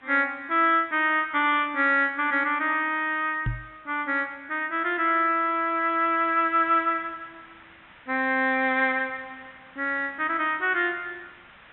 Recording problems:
treble missing; nothing above 3.7 kHz
hiss; SNR 27 dB
microphone bump; at 3.5 s; peak -1 dB vs average level

